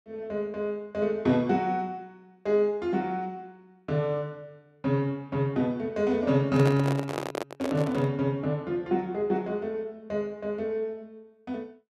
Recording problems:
handling noise; from 6.5 to 8 s; peak +1 dB vs average level

